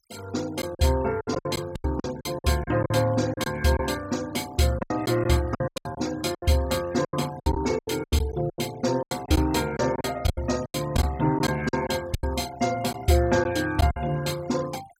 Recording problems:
denoising artefacts; signal-to-artefact ratio 19 dB
lost packets; 13% of the sound replaced, filled with silence

